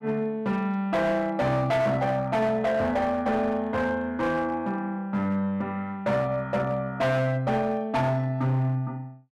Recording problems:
distorted audio; hard clipping, signal-to-distortion ratio 11 dB

